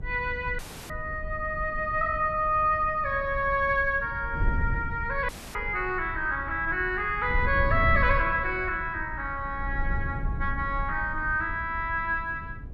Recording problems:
wind on the microphone; below 92 Hz, SNR 9 dB
audio cutting out; at 0.5 s and at 5.5 s

